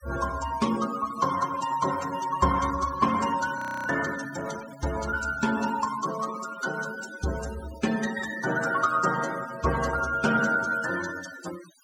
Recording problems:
noise reduction artefacts; signal-to-artefact ratio 12 dB
frozen audio; at 3.5 s

